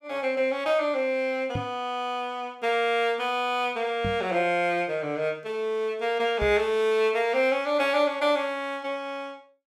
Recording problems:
knock on the microphone; at 1.5 s, at 4 s and at 6.5 s; peak -2 dB vs average level

